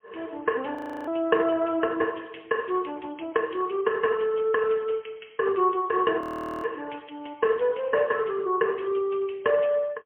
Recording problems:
telephone audio; 300 Hz to 3.1 kHz, AMR-NB, then MP3
audio freezing; at 1 s and at 6 s

